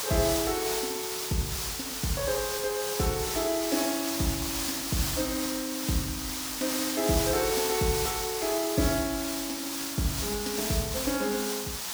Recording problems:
hiss; slope +1 dB per octave, SNR 0 dB

